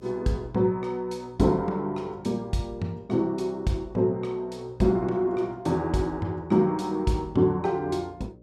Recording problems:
hum; 60 Hz, harmonics up to 600 Hz, SNR 26 dB

